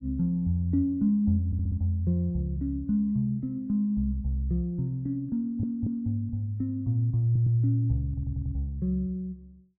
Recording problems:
stutter; 4 times, first at 1.5 s

